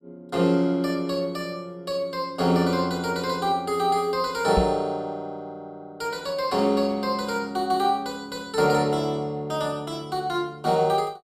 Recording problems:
knock on the microphone; at 4.5 s; peak +4 dB vs average level

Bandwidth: 15.5 kHz